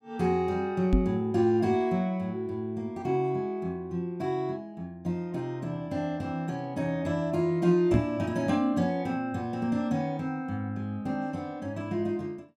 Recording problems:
microphone thump; at 1 s and at 8 s; peak +8 dB vs average level

